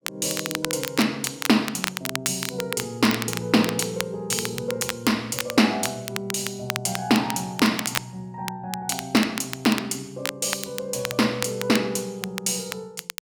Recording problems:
crackling; vinyl, SNR 7 dB

